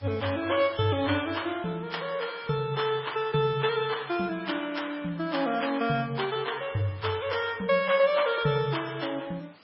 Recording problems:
lossy compression; MP3, log-spectral distance 7 dB, nothing above 5.5 kHz
background hiss; slope -3 dB per octave, SNR 27 dB

